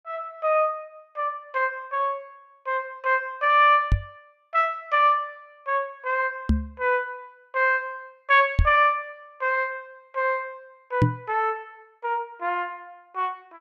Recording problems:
microphone thump; 4 times, first at 4 s; peak +7 dB vs average level

